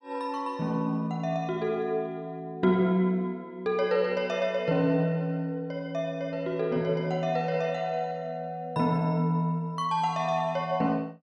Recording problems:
none

